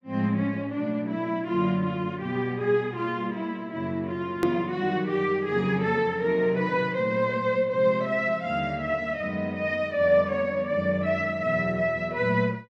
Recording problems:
click at an edit; at 4.5 s

